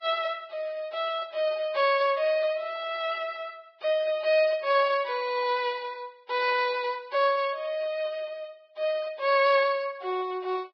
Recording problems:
lossy compression; Vorbis, log-spectral distance 3 dB, nothing above 5 kHz

